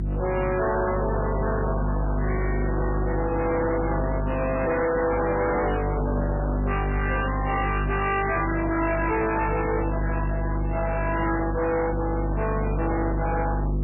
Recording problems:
codec artefacts; MP3, log-spectral distance 5 dB, nothing above 2.8 kHz
distortion; hard clipping, signal-to-distortion ratio 6 dB
electrical hum; 50 Hz, harmonics up to 650 Hz, SNR 2 dB

